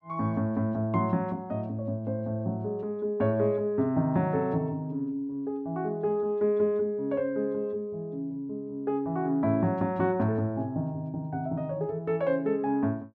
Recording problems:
none

